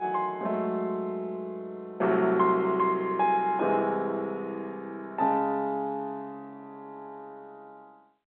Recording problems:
phone line; 240 Hz to 3.6 kHz, G.711

